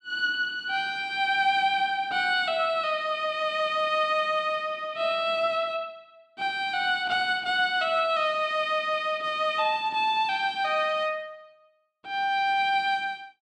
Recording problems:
none

